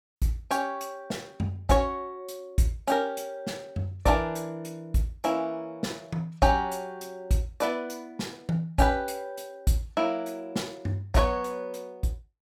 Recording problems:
none

